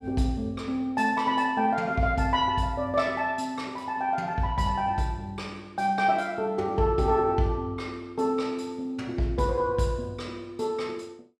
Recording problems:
none

